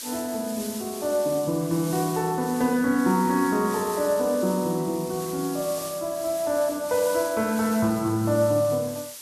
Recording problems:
hiss; SNR 12 dB

